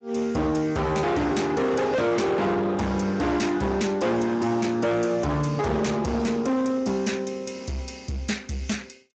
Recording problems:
lossy codec; Speex, log-spectral distance 4 dB, nothing above 7.3 kHz
distorted audio; hard clipping, signal-to-distortion ratio 6 dB

